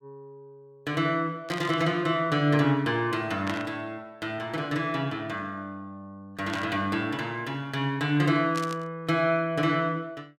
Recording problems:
burst of static; 4 times, first at 1.5 s; peak -4 dB vs average level

